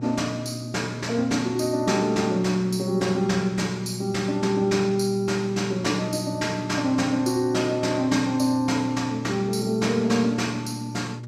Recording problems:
hum; 60 Hz, harmonics up to 600 Hz, SNR 12 dB

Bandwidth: 15 kHz